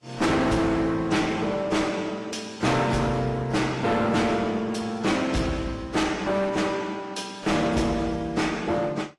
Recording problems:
codec artefacts; Vorbis, then AAC, log-spectral distance 3 dB, nothing above 11 kHz
distortion; hard clipping, uneven, signal-to-distortion ratio 6 dB

